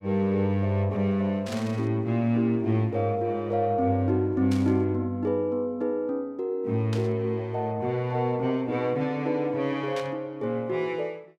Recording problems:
burst of static; 4 times, first at 1.5 s; peak -7 dB vs average level

